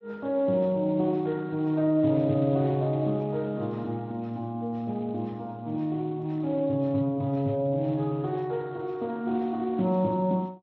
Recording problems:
codec artefacts; Speex, log-spectral distance 2 dB

